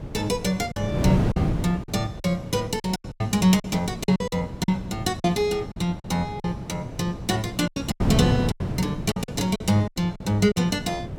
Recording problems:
hum; 60 Hz, harmonics up to 660 Hz, SNR 26 dB
wind on the microphone; below 270 Hz, SNR 5 dB
packet loss; 11% of the sound replaced, filled with silence

